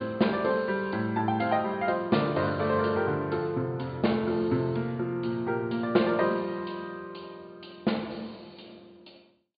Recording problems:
treble cut off; nothing above 4.8 kHz

